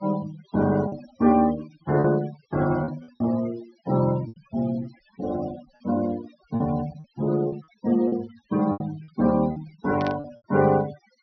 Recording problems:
low-pass filter; nothing above 5.9 kHz
denoising artefacts; signal-to-artefact ratio 16 dB
lost packets; 7% of the sound replaced, filled with repeated pitch periods
burst of static; at 10 s; peak -8 dB vs average level

